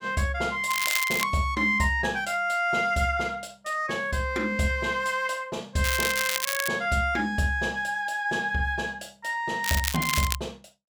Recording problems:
crackle; at 0.5 s, at 6 s and at 9.5 s; loose cable, SNR 3 dB

